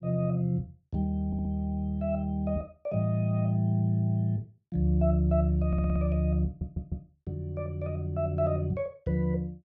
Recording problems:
audio stuttering; at 1.5 s, at 5.5 s and at 6.5 s

